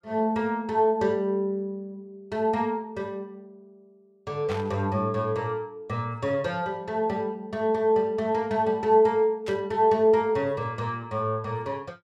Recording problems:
burst of static; at 4.5 s and at 9.5 s; peak -9 dB vs average level

